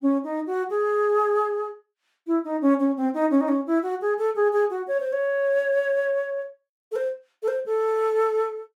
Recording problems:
none

